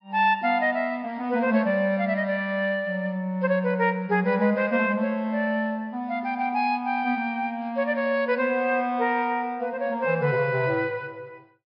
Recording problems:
treble missing; nothing above 5.5 kHz

